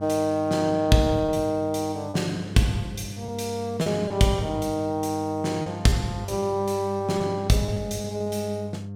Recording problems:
hum; 50 Hz, harmonics up to 700 Hz, SNR 12 dB
lost packets; 5% of the sound replaced, filled with repeated pitch periods

